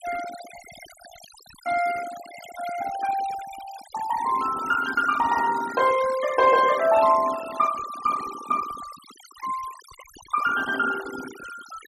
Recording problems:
denoising artefacts; signal-to-artefact ratio 15 dB

